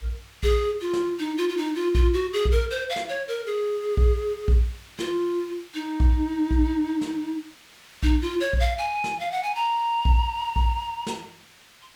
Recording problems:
background hiss; SNR 24 dB

